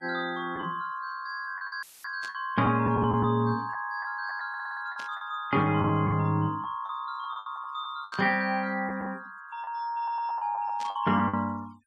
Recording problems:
denoising artefacts; signal-to-artefact ratio 28 dB
packet loss; 8% of the sound replaced, filled with the last packet
audio cutting out; at 2 s; filled with static
burst of static; 4 times, first at 2 s; peak -10 dB vs average level
audio stuttering; at 4.5 s and at 10 s

